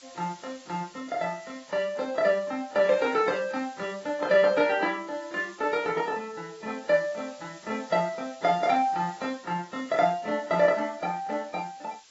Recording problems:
codec artefacts; AAC, log-spectral distance 7 dB, nothing above 7.6 kHz
hiss; slope +3 dB per octave, SNR 24 dB

